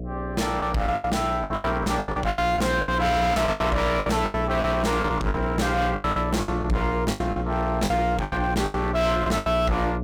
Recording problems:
distortion; hard clipping, uneven, signal-to-distortion ratio 7 dB
mains hum; 60 Hz, harmonics up to 720 Hz, SNR 5 dB
lost packets; 16% of the sound replaced, filled with the last packet

